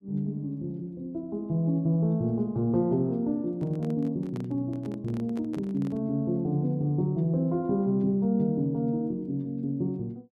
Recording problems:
microphone handling noise; from 3.5 to 6 s; peak -10 dB vs average level

